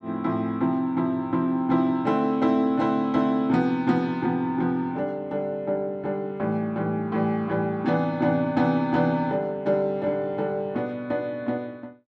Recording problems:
none

